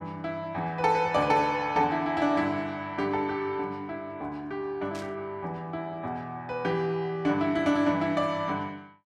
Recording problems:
static burst; at 5 s; peak -12 dB vs average level

